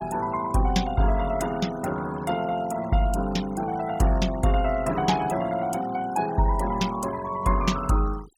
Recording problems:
noise reduction artefacts; signal-to-artefact ratio 16 dB

